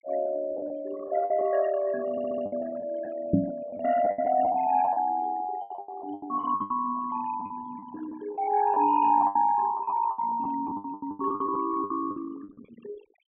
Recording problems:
treble missing; nothing above 3.3 kHz
denoising artefacts; signal-to-artefact ratio 16 dB
lost packets; 14% of the sound replaced, filled with the last packet
audio stuttering; at 2 s
microphone bump; at 3.5 s; peak +8 dB vs average level

